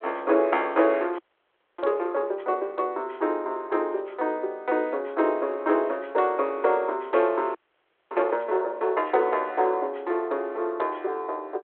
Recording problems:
phone line; 300 Hz to 3.5 kHz, G.726
audio freezing; at 1 s for 0.5 s and at 7.5 s for 0.5 s

